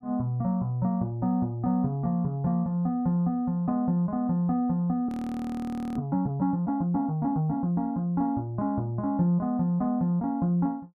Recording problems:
audio freezing; at 5 s for 1 s

